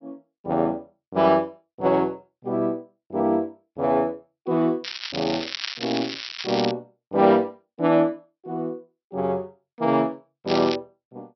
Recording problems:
treble missing; nothing above 5.7 kHz
crackle; from 5 to 6.5 s and at 10 s; loose cable, SNR 7 dB

